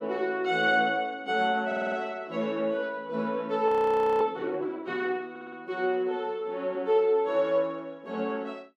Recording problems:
audio stuttering; at 1.5 s and at 5.5 s
frozen audio; at 3.5 s for 0.5 s

